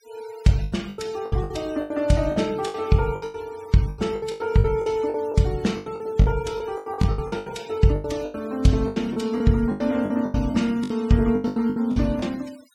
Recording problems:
denoising artefacts; signal-to-artefact ratio 23 dB
lost packets; 18% of the sound replaced, filled with the last packet

